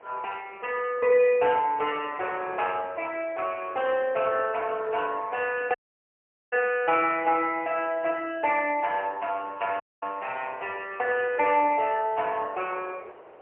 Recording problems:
telephone audio; 340 Hz to 3 kHz, AMR-NB, then MP3
wind noise; below 980 Hz, SNR 21 dB
dropout; at 6 s for 1 s and at 10 s

